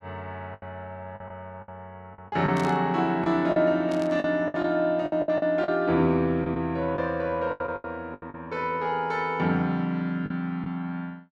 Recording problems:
packet loss; 10% of the sound replaced, filled with the last packet
static burst; at 2.5 s and at 4 s; peak -10 dB vs average level

